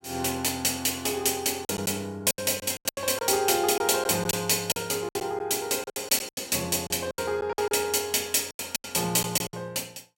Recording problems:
packet loss; 12% of the sound replaced, filled with silence

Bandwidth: 16.5 kHz